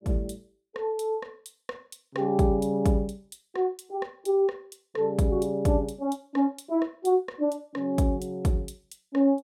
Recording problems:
none

